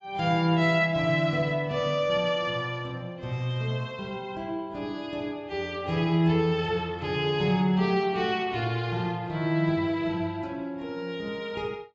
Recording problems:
lossy codec; AAC, log-spectral distance 2 dB, nothing above 7.3 kHz

